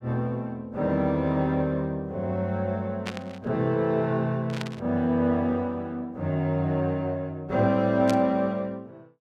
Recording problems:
burst of static; at 3 s, at 4.5 s and at 8 s; peak -3 dB vs average level

